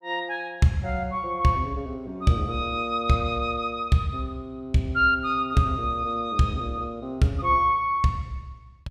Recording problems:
none

